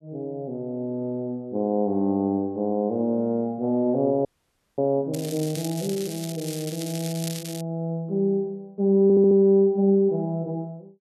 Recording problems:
frozen audio; at 4.5 s for 0.5 s
crackling; from 5 to 7.5 s; loose cable, SNR 12 dB
stutter; at 9 s

